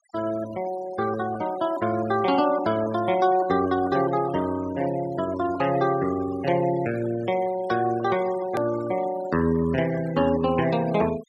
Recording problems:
denoising artefacts; signal-to-artefact ratio 17 dB
edit click; at 8.5 s

